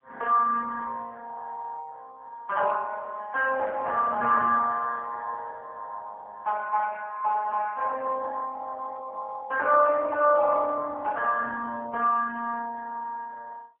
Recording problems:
telephone audio; 300 Hz to 2.5 kHz, AMR-NB

